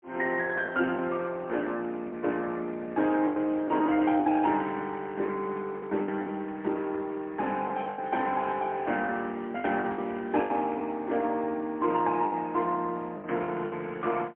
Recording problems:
phone line; 220 Hz to 3.1 kHz, AMR-NB, then MP3
lost packets; 8% of the sound replaced, filled with the last packet

